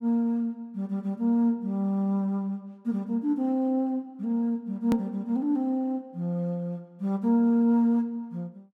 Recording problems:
hard cut with a click; at 5 s

